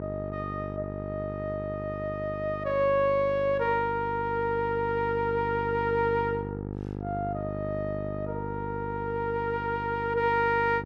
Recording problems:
hum; 50 Hz, harmonics up to 950 Hz, SNR 8 dB

